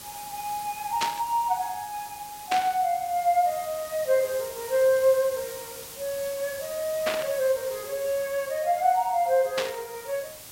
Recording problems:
background hiss; slope -1 dB per octave, SNR 13 dB
static burst; 4 times, first at 1 s; peak +3 dB vs average level

